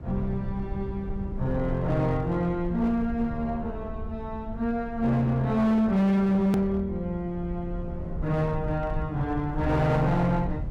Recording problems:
distortion; hard clipping, signal-to-distortion ratio 11 dB
rumble; below 100 Hz, SNR 11 dB
edit click; at 6.5 s

